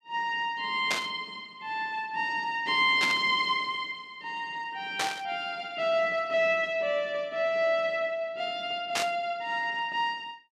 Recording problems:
static burst; 4 times, first at 1 s; peak +3 dB vs average level

